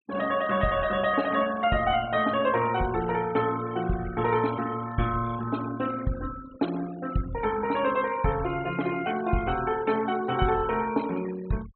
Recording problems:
treble missing; nothing above 4.1 kHz
noise reduction artefacts; signal-to-artefact ratio 16 dB

